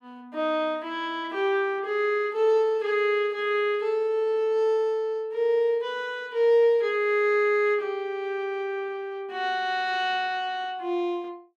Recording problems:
none

